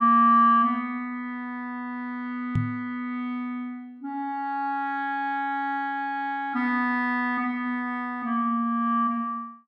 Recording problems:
knock on the microphone; at 2.5 s; peak +3 dB vs average level

